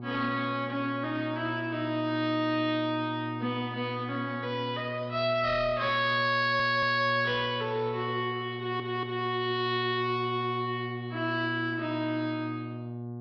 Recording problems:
treble cut off; nothing above 5.5 kHz
distorted audio; soft clipping, signal-to-distortion ratio 8 dB
hum; 60 Hz, harmonics up to 840 Hz, SNR 9 dB
stutter; at 6.5 s and at 8.5 s

